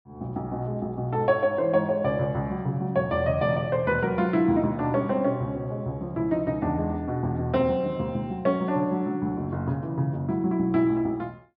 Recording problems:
treble missing; nothing above 5.5 kHz

